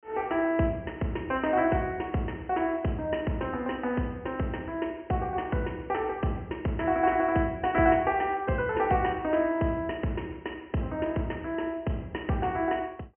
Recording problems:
treble missing; nothing above 3 kHz

